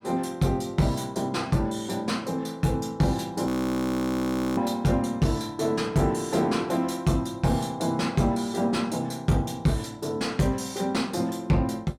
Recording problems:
distortion; soft clipping, signal-to-distortion ratio 12 dB
frozen audio; at 3.5 s for 1 s

